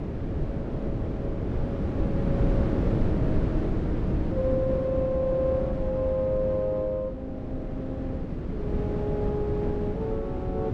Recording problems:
wind on the microphone; below 300 Hz, SNR -2 dB

